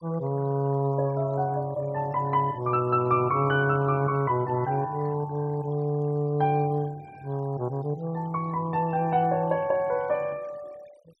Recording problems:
noise reduction artefacts; signal-to-artefact ratio 26 dB

